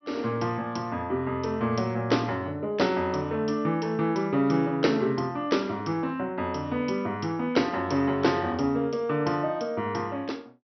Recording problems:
treble missing; nothing above 5.9 kHz

